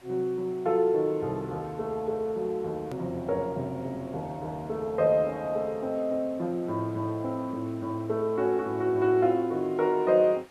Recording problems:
hiss; SNR 27 dB
hard cut with a click; at 3 s

